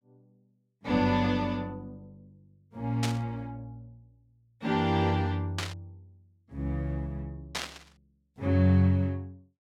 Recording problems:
static burst; at 3 s, at 5.5 s and at 7.5 s; peak +1 dB vs average level

